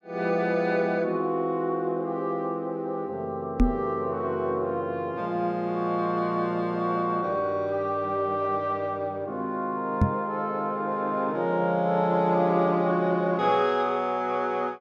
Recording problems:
microphone bump; at 3.5 s and at 10 s; peak +8 dB vs average level

